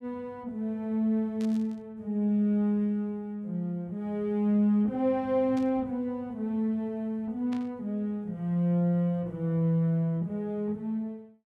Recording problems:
static burst; at 1.5 s, at 5.5 s and at 7.5 s; peak -14 dB vs average level

